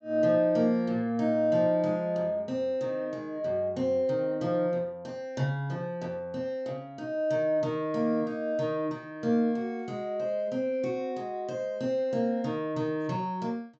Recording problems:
low-pass filter; nothing above 8 kHz

